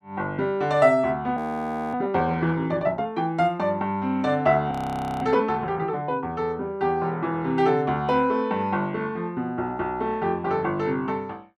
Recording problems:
frozen audio; at 1.5 s for 0.5 s and at 4.5 s for 0.5 s

